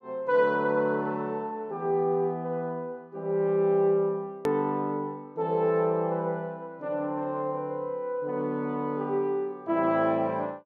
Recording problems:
click at an edit; at 4.5 s

